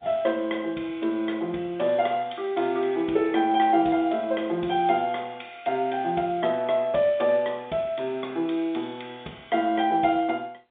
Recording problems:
phone line; 260 Hz to 3.7 kHz, G.711

